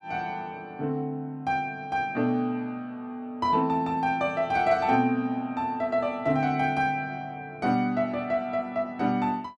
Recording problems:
none

